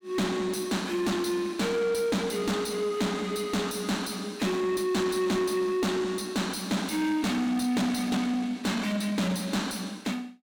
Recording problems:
distorted audio; soft clipping, signal-to-distortion ratio 6 dB

